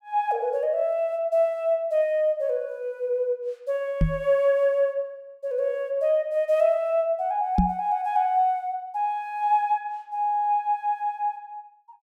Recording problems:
knock on the microphone; at 4 s and at 7.5 s; peak +7 dB vs average level

